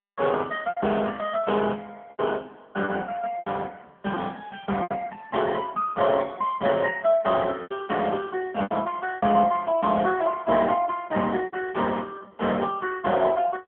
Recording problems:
phone line; 220 Hz to 2.7 kHz, AMR-NB
lost packets; 6% of the sound replaced, filled with repeated pitch periods

